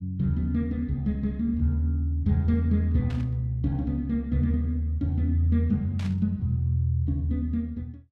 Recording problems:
burst of static; at 3 s and at 6 s; peak -13 dB vs average level

